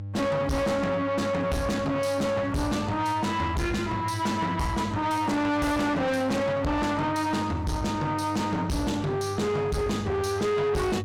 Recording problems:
distorted audio; soft clipping, signal-to-distortion ratio 6 dB
electrical hum; 50 Hz, harmonics up to 500 Hz, SNR 11 dB

